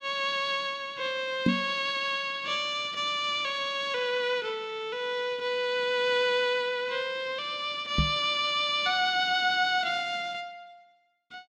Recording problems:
knock on the microphone; at 1.5 s and at 8 s; peak +6 dB vs average level

